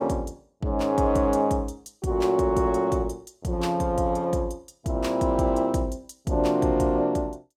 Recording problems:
none

